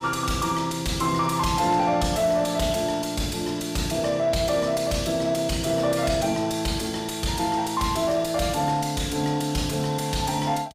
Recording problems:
distorted audio; soft clipping, signal-to-distortion ratio 10 dB

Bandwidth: 15.5 kHz